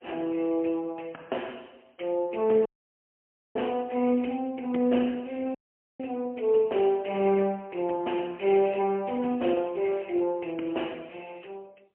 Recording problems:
telephone audio; 220 Hz to 3.2 kHz, AMR-NB, then MP3
audio cutting out; at 2.5 s for 1 s and at 5.5 s

